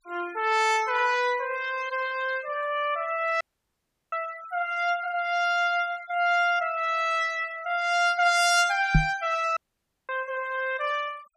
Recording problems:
noise reduction artefacts; signal-to-artefact ratio 20 dB
audio cutting out; at 3.5 s for 0.5 s and at 9.5 s for 0.5 s
microphone thump; at 9 s; peak +8 dB vs average level

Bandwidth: 15 kHz